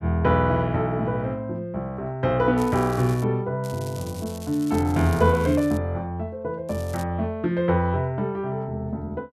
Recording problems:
crackle; at 2.5 s, from 3.5 to 6 s and at 6.5 s; loose cable, SNR 19 dB

